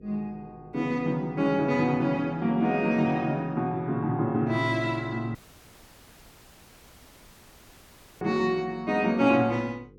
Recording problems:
electrical hum; 50 Hz, harmonics up to 500 Hz, SNR 26 dB
dropout; at 5.5 s for 3 s

